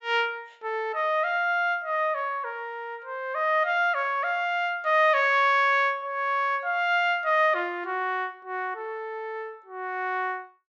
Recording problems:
treble missing; nothing above 8 kHz

